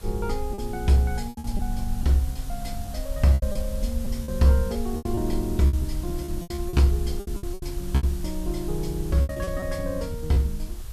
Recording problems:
background hiss; slope -2 dB per octave, SNR 18 dB
low-frequency rumble; below 56 Hz, SNR 9 dB
lost packets; 12% of the sound replaced, filled with repeated pitch periods

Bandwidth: 14 kHz